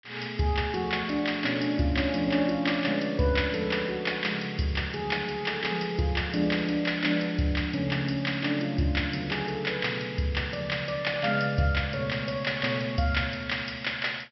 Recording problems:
low-pass filter; nothing above 5.6 kHz

